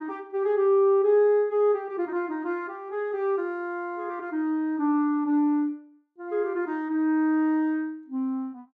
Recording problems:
none

